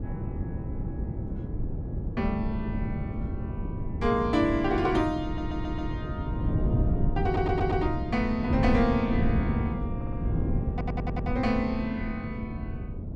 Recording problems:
wind on the microphone; below 190 Hz, SNR 2 dB
audio stuttering; 4 times, first at 5 s

